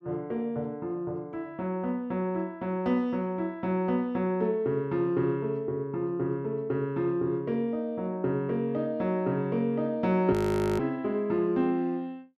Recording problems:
frozen audio; at 10 s

